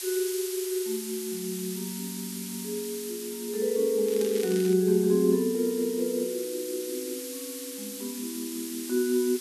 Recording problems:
background hiss; slope +5 dB per octave, SNR 9 dB
crackling; at 4 s; loose cable, SNR 13 dB

